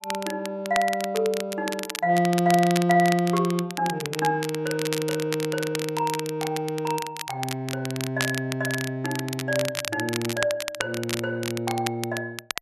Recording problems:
crackling; vinyl, SNR 8 dB

